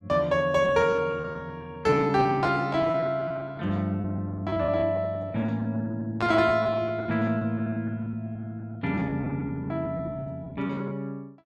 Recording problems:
lost packets; 17% of the sound replaced, filled with repeated pitch periods

